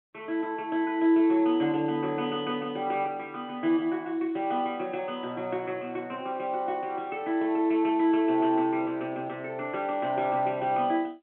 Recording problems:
telephone audio; 190 Hz to 3.3 kHz, G.711

